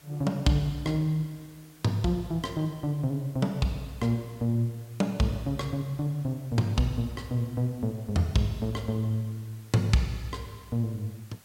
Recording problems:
hiss; slope -2 dB per octave, SNR 25 dB

